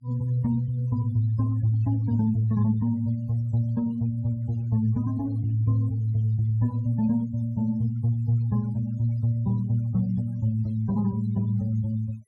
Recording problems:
noise reduction artefacts; signal-to-artefact ratio 26 dB

